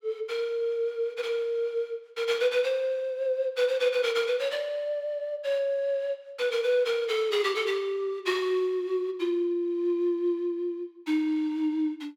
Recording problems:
none

